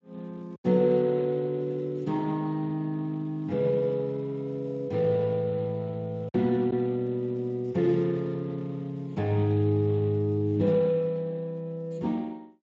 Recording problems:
lossy codec; Speex, log-spectral distance 2 dB
packet loss; 1.1% of the sound replaced, filled with silence

